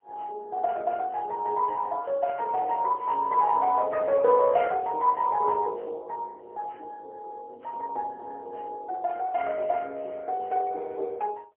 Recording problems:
telephone audio; 370 Hz to 3.8 kHz, AMR-NB, then MP3

